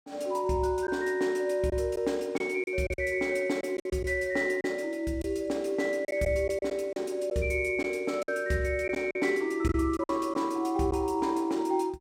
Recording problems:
lost packets; 6% of the sound replaced, filled with silence

